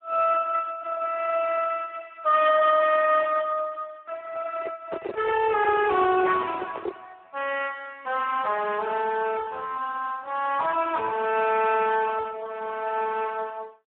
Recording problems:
phone line; 300 Hz to 2.6 kHz, Speex
distorted audio; hard clipping, signal-to-distortion ratio 11 dB
handling noise; from 4.5 to 7 s; peak -2 dB vs average level

